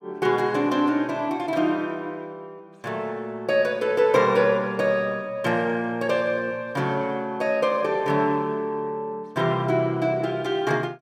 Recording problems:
none

